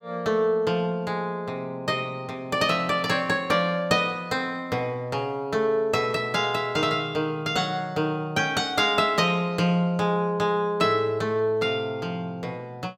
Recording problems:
none

